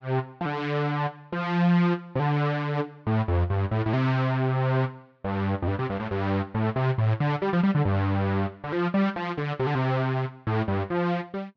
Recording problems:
none

